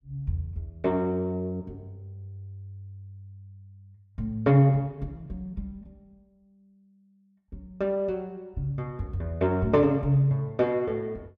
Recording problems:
none

